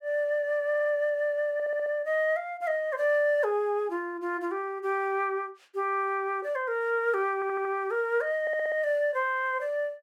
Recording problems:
audio stuttering; 4 times, first at 0.5 s

